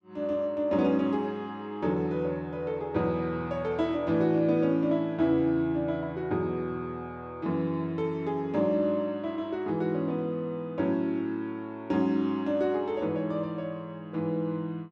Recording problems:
none

